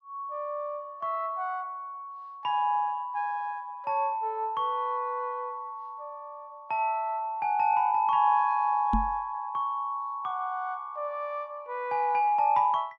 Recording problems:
microphone thump; at 9 s; peak +4 dB vs average level

